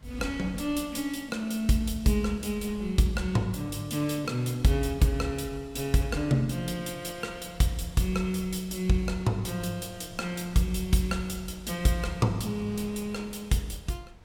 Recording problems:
wind on the microphone; below 220 Hz, SNR 22 dB

